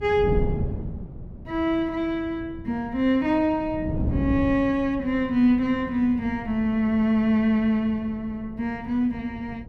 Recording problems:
wind noise; below 200 Hz, SNR 10 dB

